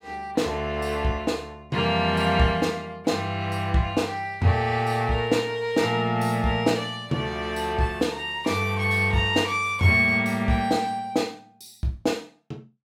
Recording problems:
none

